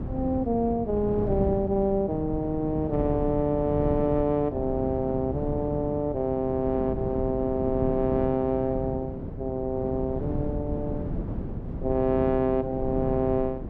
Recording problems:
wind on the microphone; below 270 Hz, SNR 7 dB

